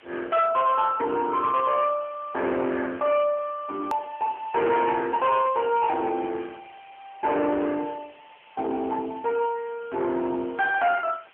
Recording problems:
telephone audio; 280 Hz to 3.6 kHz, AMR-NB
distortion; soft clipping, signal-to-distortion ratio 11 dB
hiss; SNR 27 dB
hard cut with a click; at 4 s

